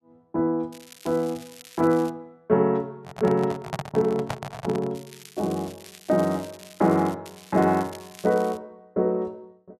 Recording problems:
crackle; from 0.5 to 2 s, from 5 to 7 s and from 7.5 to 8.5 s; loose cable, SNR 21 dB
microphone handling noise; from 3 to 5 s; peak 0 dB vs average level

